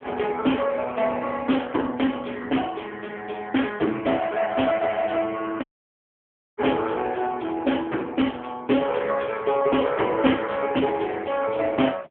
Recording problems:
telephone audio; 220 Hz to 3.4 kHz, AMR-NB
audio cutting out; at 5.5 s for 1 s

